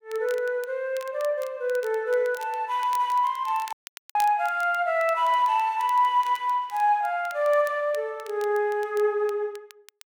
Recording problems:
crackle; vinyl, SNR 23 dB
dropout; at 3.5 s

